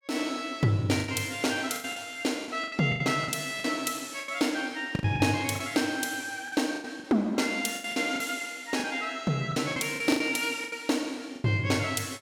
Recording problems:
lost packets; 12% of the sound replaced, filled with the last packet

